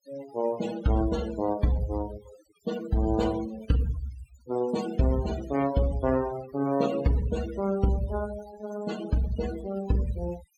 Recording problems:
noise reduction artefacts; signal-to-artefact ratio 13 dB

